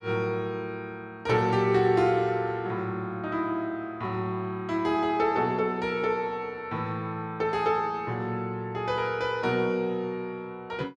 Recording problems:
none

